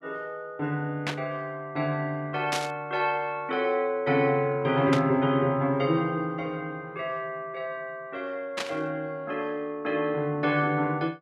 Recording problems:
burst of static; 4 times, first at 1 s; peak +1 dB vs average level

